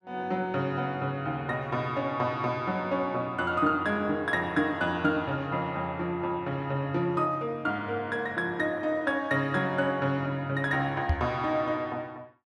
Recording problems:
microphone thump; at 11 s; peak +5 dB vs average level

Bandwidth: 12.5 kHz